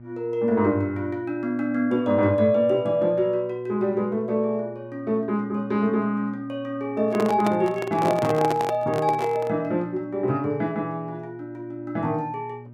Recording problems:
mains hum; 60 Hz, harmonics up to 600 Hz, SNR 20 dB
handling noise; from 7 to 9.5 s; peak 0 dB vs average level

